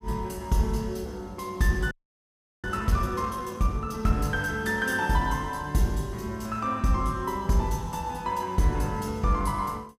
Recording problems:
audio freezing; at 2 s for 0.5 s

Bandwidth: 15.5 kHz